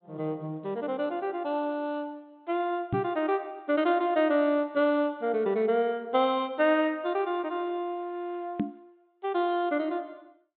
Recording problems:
treble missing; nothing above 4 kHz
microphone thump; at 3 s and at 8.5 s; peak +3 dB vs average level

